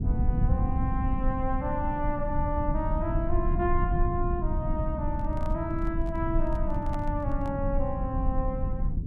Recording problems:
low-frequency rumble; below 96 Hz, SNR -2 dB
microphone handling noise; from 5 to 7.5 s; peak -6 dB vs average level

